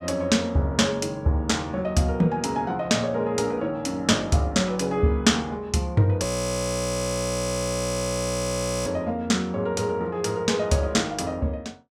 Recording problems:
audio freezing; at 6 s for 2.5 s

